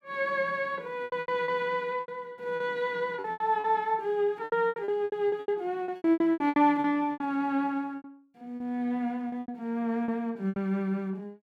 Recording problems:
lost packets; 16% of the sound replaced, filled with repeated pitch periods

